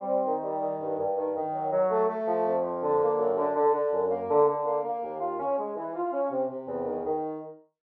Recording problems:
none

